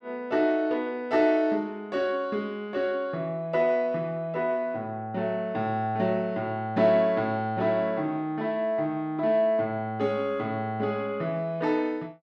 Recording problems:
none

